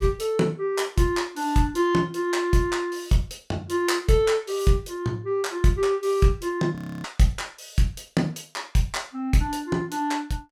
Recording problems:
audio freezing; at 7 s

